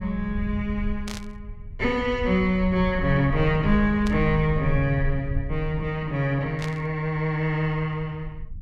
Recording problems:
low-frequency rumble; below 82 Hz, SNR 9 dB
static burst; at 1 s, at 4 s and at 6.5 s; peak -6 dB vs average level

